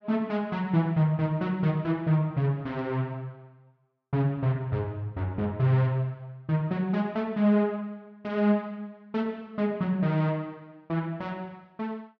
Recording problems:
none

